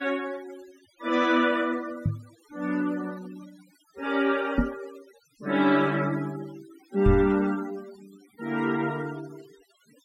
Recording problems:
noise reduction artefacts; signal-to-artefact ratio 21 dB
knock on the microphone; at 2 s, at 4.5 s and at 7 s; peak +6 dB vs average level

